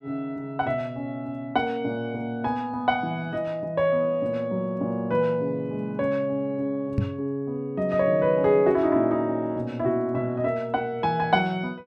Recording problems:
microphone thump; at 7 s; peak +5 dB vs average level

